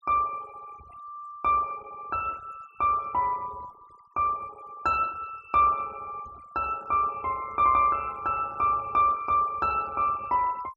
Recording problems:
denoising artefacts; signal-to-artefact ratio 24 dB

